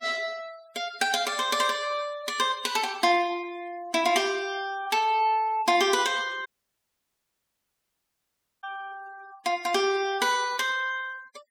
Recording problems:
noise reduction artefacts; signal-to-artefact ratio 21 dB
audio cutting out; at 6.5 s for 2 s

